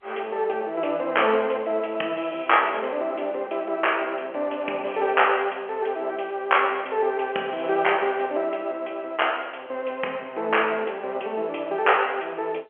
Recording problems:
telephone audio; 320 Hz to 3.1 kHz, G.711

